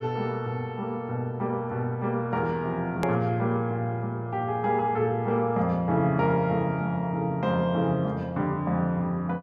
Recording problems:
hard cut with a click; at 3 s

